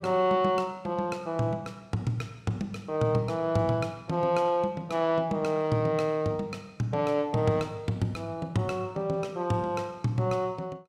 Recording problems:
none

